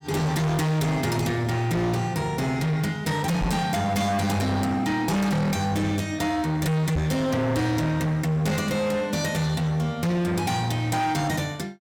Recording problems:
distorted audio; hard clipping, signal-to-distortion ratio 7 dB
microphone thump; at 3.5 s and at 7 s; peak +3 dB vs average level

